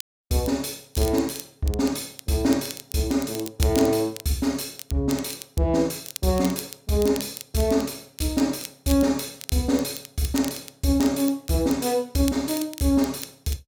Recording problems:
crackling; vinyl, SNR 14 dB

